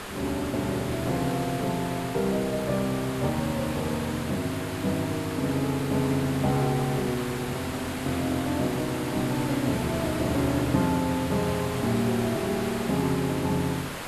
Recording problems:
hiss; SNR 7 dB

